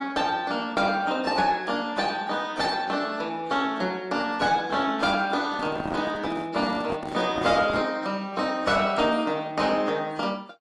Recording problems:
lossy codec; AAC, log-spectral distance 3 dB
distorted audio; soft clipping, signal-to-distortion ratio 11 dB
microphone handling noise; from 5.5 to 8 s; peak -2 dB vs average level

